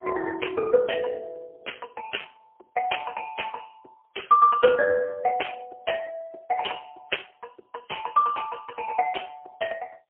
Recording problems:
phone line; 300 Hz to 3.2 kHz, AMR-NB, then MP3

